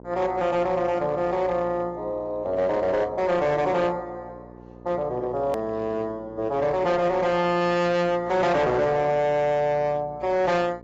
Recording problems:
codec artefacts; AAC, log-spectral distance 2 dB
distortion; hard clipping, signal-to-distortion ratio 10 dB
hum; 60 Hz, harmonics up to 1.1 kHz, SNR 21 dB
hard cut with a click; at 5.5 s

